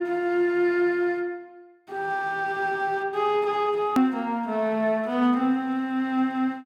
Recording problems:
click at an edit; at 4 s

